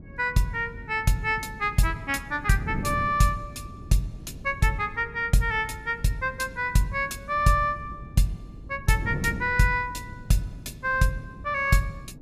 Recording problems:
wind noise; below 220 Hz, SNR 14 dB

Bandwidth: 14.5 kHz